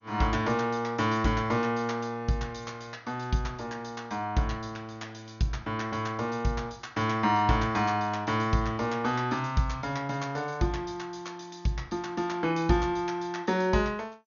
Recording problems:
lossy compression; MP2, log-spectral distance 3 dB, nothing above 6.7 kHz

